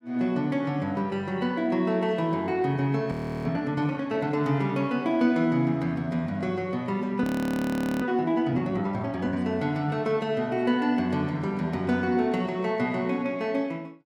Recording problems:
audio freezing; at 3 s and at 7 s for 1 s

